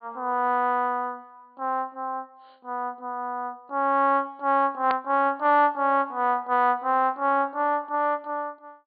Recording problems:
treble missing; nothing above 4.7 kHz
click at an edit; at 5 s

